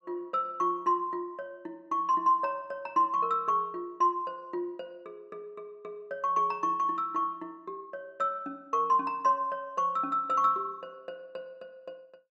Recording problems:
none

